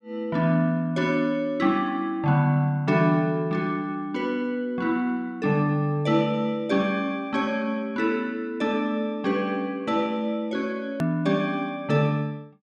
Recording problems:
click at an edit; at 11 s

